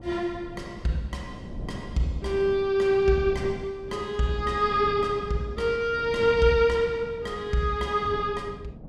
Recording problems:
wind on the microphone; below 270 Hz, SNR 15 dB

